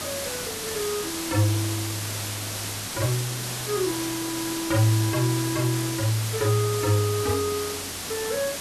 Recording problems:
hiss; slope -1 dB per octave, SNR 3 dB

